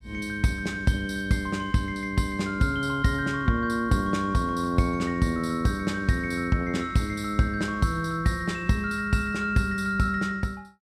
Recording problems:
none

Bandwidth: 15.5 kHz